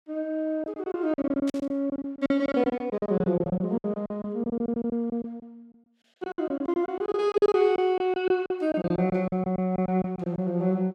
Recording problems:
lost packets; 18% of the sound replaced, filled with silence
static burst; at 1.5 s; peak -9 dB vs average level

